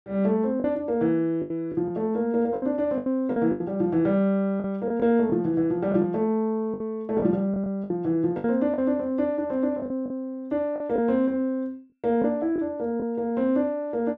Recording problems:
lost packets; 8% of the sound replaced, filled with the last packet

